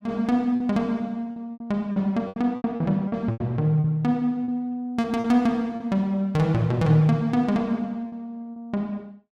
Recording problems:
lost packets; 9% of the sound replaced, filled with repeated pitch periods

